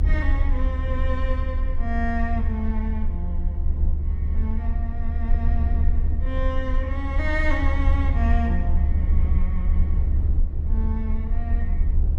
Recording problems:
low-frequency rumble; below 72 Hz, SNR -7 dB

